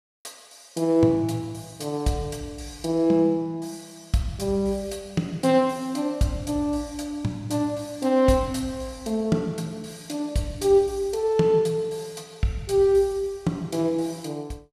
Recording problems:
none

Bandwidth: 14.5 kHz